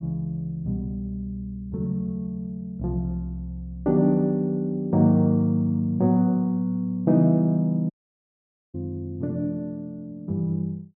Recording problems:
dropout; at 8 s for 1 s

